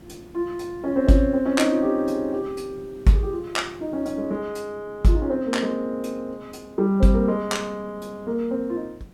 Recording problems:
hiss; SNR 24 dB

